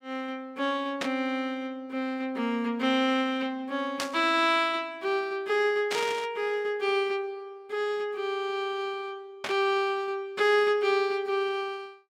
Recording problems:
burst of static; 4 times, first at 1 s; peak 0 dB vs average level

